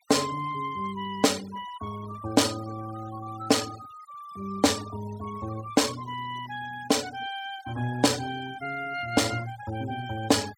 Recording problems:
noise reduction artefacts; signal-to-artefact ratio 17 dB

